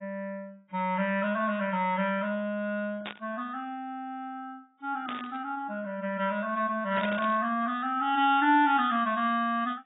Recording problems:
codec artefacts; AAC, log-spectral distance 2 dB, nothing above 3.6 kHz
static burst; at 3 s, at 5 s and at 7 s; peak -4 dB vs average level

